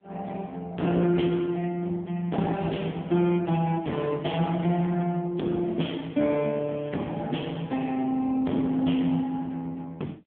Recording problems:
telephone audio; 130 Hz to 3.5 kHz, AMR-NB
distortion; hard clipping, uneven, signal-to-distortion ratio 10 dB

